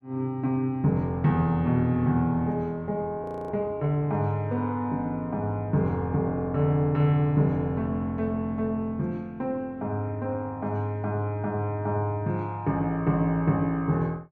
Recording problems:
frozen audio; at 3 s

